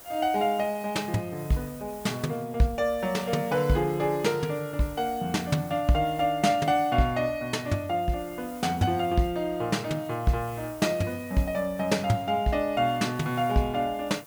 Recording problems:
background hiss; SNR 20 dB

